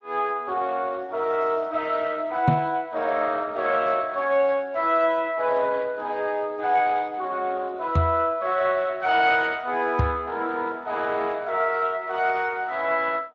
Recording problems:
codec artefacts; Speex, log-spectral distance 3 dB
microphone bump; at 2.5 s, at 8 s and at 10 s; peak +5 dB vs average level

